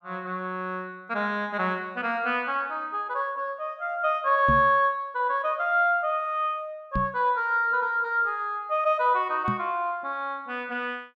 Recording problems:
microphone thump; at 4.5 s, at 7 s and at 9.5 s; peak +1 dB vs average level

